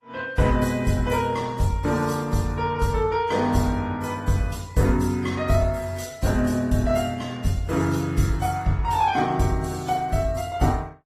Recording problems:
lossy codec; Opus, then AAC, log-spectral distance 4 dB, nothing above 14.3 kHz

